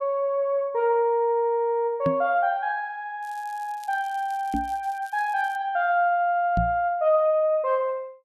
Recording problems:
microphone bump; at 2 s, at 4.5 s and at 6.5 s; peak +2 dB vs average level
crackle; from 3 to 5.5 s; loose cable, SNR 27 dB

